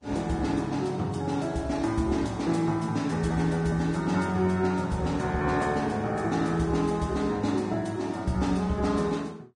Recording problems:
lossy compression; Vorbis, log-spectral distance 2 dB, nothing above 10.1 kHz

